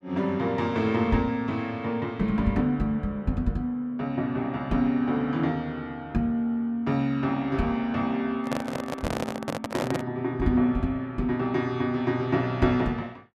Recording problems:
handling noise; from 8.5 to 10 s; peak +1 dB vs average level

